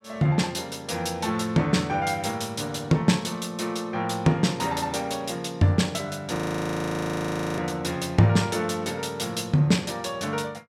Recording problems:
frozen audio; at 6.5 s for 1 s

